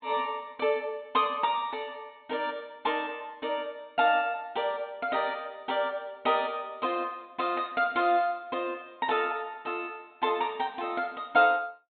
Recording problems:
treble missing; nothing above 4 kHz

